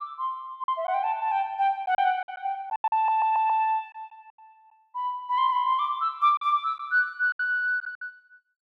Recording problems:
lost packets; 7% of the sound replaced, filled with silence
audio stuttering; at 3 s

